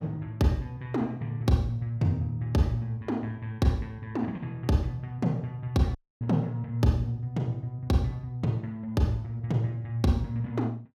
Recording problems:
dropout; at 6 s

